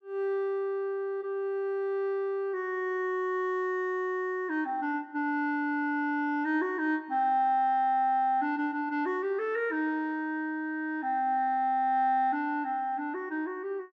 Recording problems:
none

